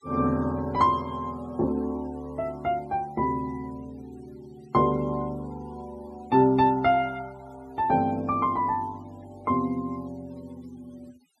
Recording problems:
noise reduction artefacts; signal-to-artefact ratio 26 dB

